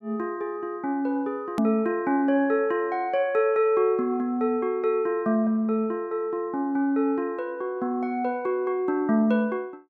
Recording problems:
hard cut with a click; at 1.5 s

